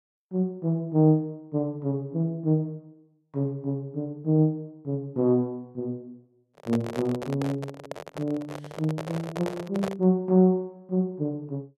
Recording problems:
microphone handling noise; from 6.5 to 10 s; peak -1 dB vs average level

